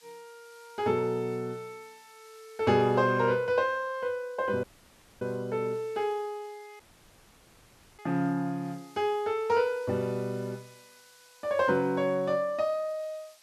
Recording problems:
background hiss; slope +2 dB per octave, SNR 28 dB
dropout; at 4.5 s for 0.5 s and at 7 s for 1 s

